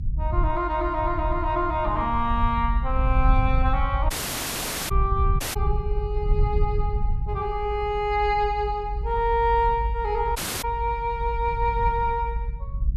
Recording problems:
rumble; below 68 Hz, SNR 3 dB
audio cutting out; at 4 s for 1 s, at 5.5 s and at 10 s

